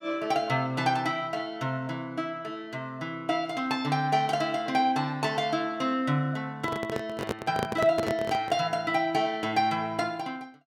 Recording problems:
handling noise; from 6.5 to 8.5 s; peak +2 dB vs average level

